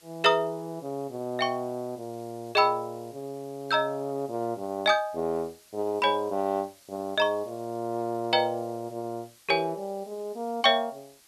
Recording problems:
hiss; slope +1 dB per octave, SNR 26 dB

